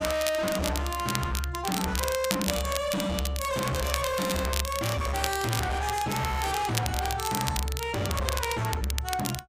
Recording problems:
distorted audio; hard clipping, signal-to-distortion ratio 6 dB
crackle; vinyl, SNR 5 dB

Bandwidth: 15 kHz